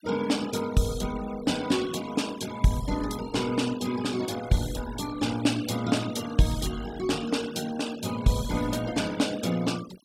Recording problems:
noise reduction artefacts; signal-to-artefact ratio 15 dB

